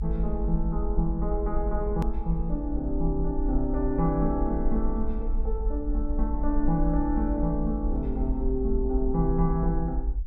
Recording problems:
low-frequency rumble; below 54 Hz, SNR 2 dB
edit click; at 2 s

